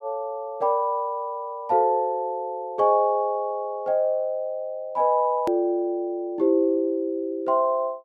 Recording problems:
click at an edit; at 5.5 s

